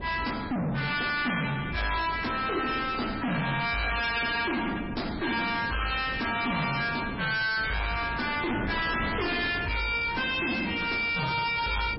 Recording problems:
codec artefacts; MP3, log-spectral distance 7 dB, nothing above 5.3 kHz
distortion; soft clipping, signal-to-distortion ratio 5 dB
wind on the microphone; below 1.4 kHz, SNR 10 dB

